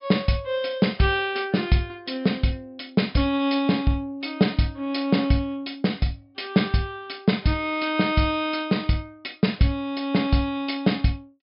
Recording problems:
low-pass filter; nothing above 5.5 kHz

